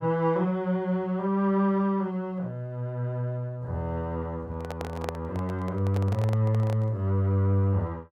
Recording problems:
handling noise; from 4.5 to 7 s; peak -2 dB vs average level

